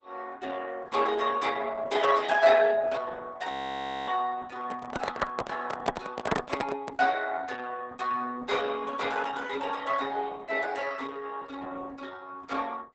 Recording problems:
lossy compression; Opus, log-spectral distance 5 dB, nothing above 7.8 kHz
audio freezing; at 3.5 s for 0.5 s
handling noise; from 4.5 to 7 s; peak +7 dB vs average level

